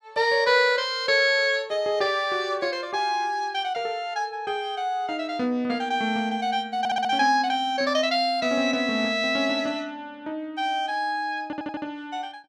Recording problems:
audio stuttering; at 7 s and at 11 s

